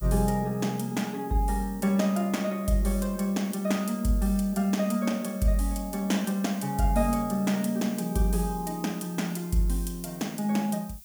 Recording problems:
background hiss; SNR 19 dB

